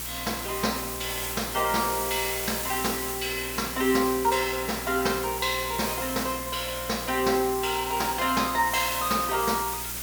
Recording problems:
mains hum; 60 Hz, harmonics up to 420 Hz, SNR 17 dB
hiss; slope 0 dB per octave, SNR 5 dB

